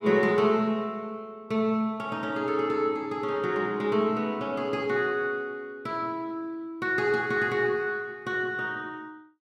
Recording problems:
none

